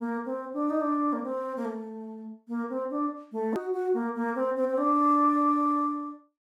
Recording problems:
hard cut with a click; at 3.5 s

